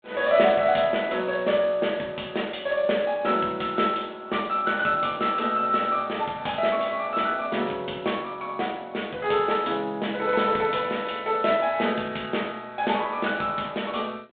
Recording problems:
telephone audio; 260 Hz to 3.6 kHz, G.726

